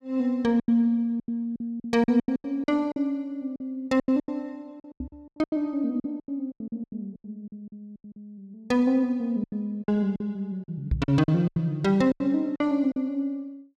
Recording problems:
packet loss; 15% of the sound replaced, filled with silence
microphone bump; at 5 s and at 11 s; peak +4 dB vs average level

